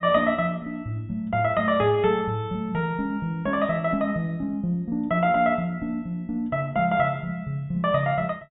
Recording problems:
treble cut off; nothing above 4 kHz

